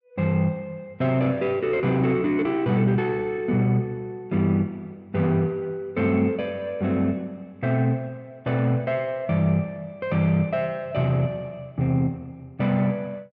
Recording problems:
none

